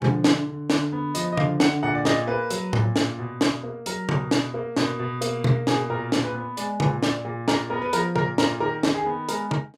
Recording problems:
none

